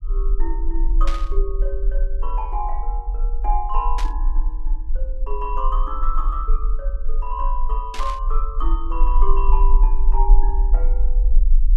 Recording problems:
rumble; below 38 Hz, strongest tone 20 Hz, SNR -6 dB
burst of static; at 1 s, at 4 s and at 8 s; peak +1 dB vs average level

